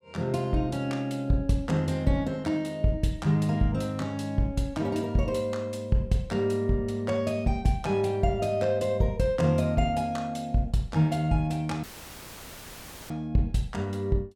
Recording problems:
audio cutting out; at 12 s for 1.5 s; filled with static

